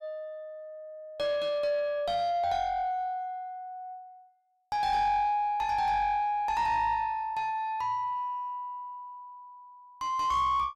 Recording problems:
distorted audio; soft clipping, signal-to-distortion ratio 10 dB

